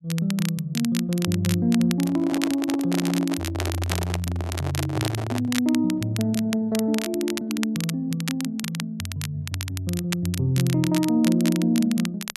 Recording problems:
crackling; vinyl, SNR 10 dB
handling noise; from 2 to 5.5 s; peak -2 dB vs average level

